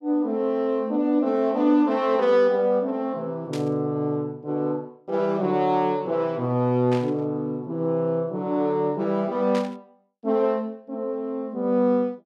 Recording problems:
static burst; at 3.5 s, at 7 s and at 9.5 s; peak -8 dB vs average level

